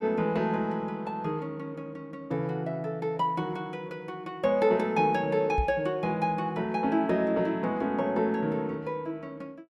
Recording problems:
knock on the microphone; at 5.5 s; peak +3 dB vs average level

